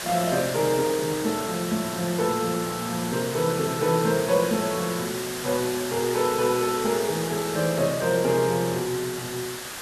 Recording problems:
hiss; SNR 7 dB

